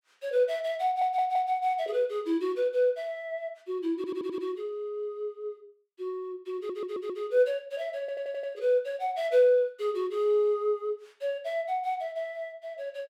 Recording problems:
audio stuttering; 4 times, first at 1 s

